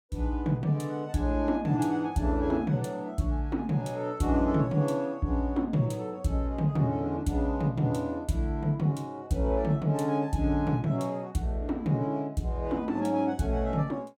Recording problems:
none

